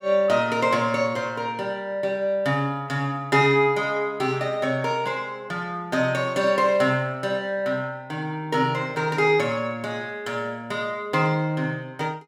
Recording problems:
none

